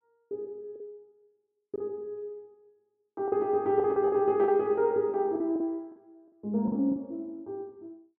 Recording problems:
packet loss; 8% of the sound replaced, filled with the last packet

